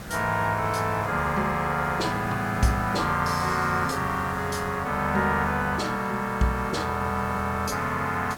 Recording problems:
background hiss; SNR 13 dB

